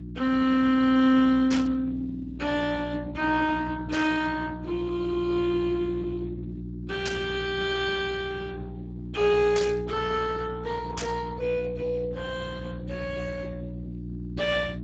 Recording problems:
lossy codec; Speex, log-spectral distance 4 dB
hum; 60 Hz, harmonics up to 360 Hz, SNR 10 dB
static burst; 5 times, first at 1.5 s; peak -1 dB vs average level

